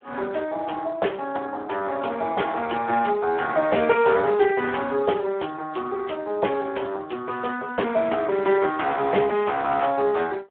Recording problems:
telephone audio; 300 Hz to 3.4 kHz, Speex

